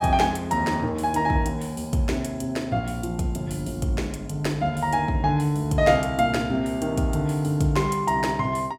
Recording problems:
none

